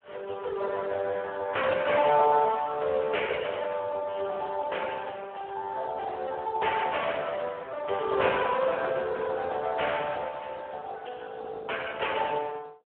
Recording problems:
telephone audio; 340 Hz to 3.3 kHz, Speex

